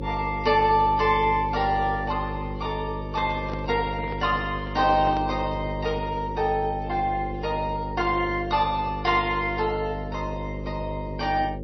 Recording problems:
codec artefacts; MP3, log-spectral distance 2 dB, nothing above 5 kHz
electrical hum; 50 Hz, harmonics up to 550 Hz, SNR 8 dB
microphone handling noise; from 3 to 5.5 s; peak -6 dB vs average level

